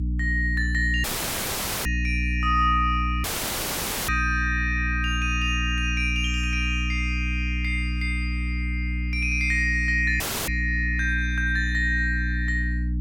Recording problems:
hum; 60 Hz, harmonics up to 300 Hz, SNR 3 dB
audio cutting out; at 1 s for 1 s, at 3 s for 1 s and at 10 s

